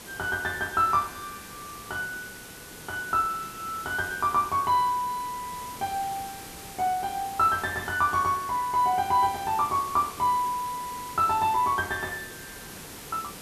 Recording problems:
background hiss; slope -3 dB per octave, SNR 14 dB

